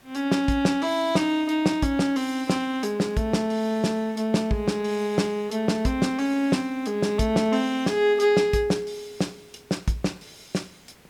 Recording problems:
hiss; slope -4 dB per octave, SNR 29 dB

